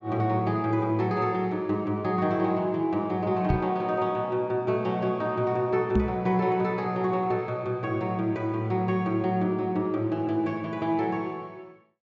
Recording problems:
treble missing; nothing above 8 kHz
microphone thump; at 3.5 s and at 6 s; peak +5 dB vs average level

